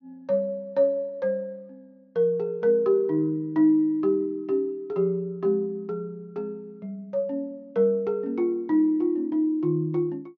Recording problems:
treble cut off; nothing above 6.6 kHz

